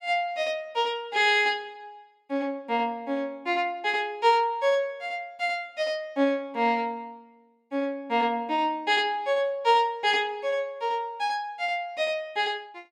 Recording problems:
none

